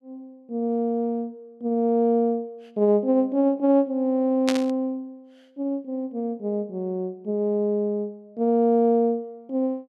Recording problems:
static burst; at 4.5 s; peak +1 dB vs average level

